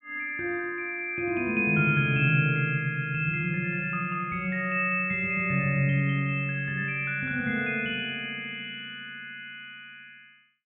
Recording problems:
treble missing; nothing above 3.7 kHz

